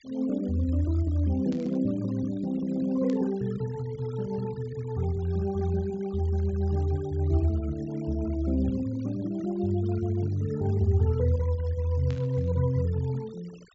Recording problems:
low-pass filter; nothing above 8 kHz
denoising artefacts; signal-to-artefact ratio 25 dB
static burst; at 1.5 s, at 3 s and at 12 s; peak -13 dB vs average level

